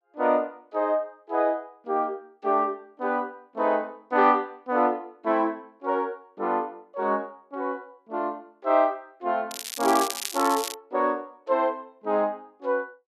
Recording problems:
crackling; from 9.5 to 11 s; loose cable, SNR 7 dB

